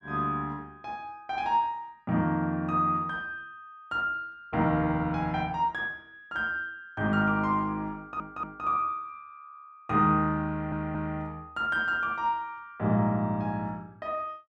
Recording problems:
stutter; at 8 s and at 10 s

